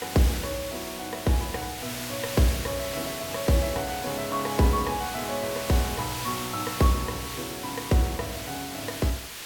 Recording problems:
background hiss; slope 0 dB per octave, SNR 6 dB

